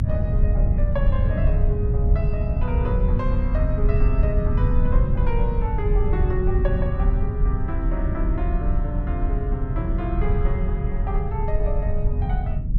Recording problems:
low-frequency rumble; below 88 Hz, SNR -7 dB

